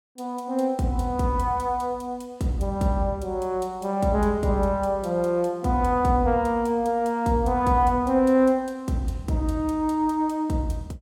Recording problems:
none

